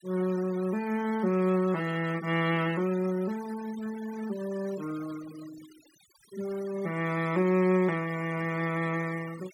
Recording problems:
denoising artefacts; signal-to-artefact ratio 18 dB

